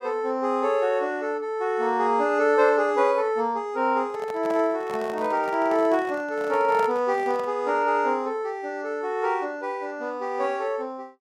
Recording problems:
handling noise; from 4 to 7.5 s; peak -6 dB vs average level

